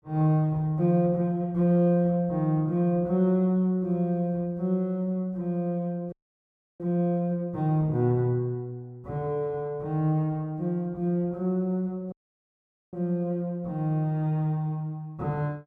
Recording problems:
dropout; at 6 s for 0.5 s and at 12 s for 1 s

